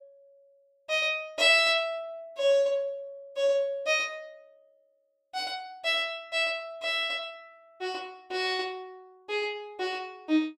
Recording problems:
none

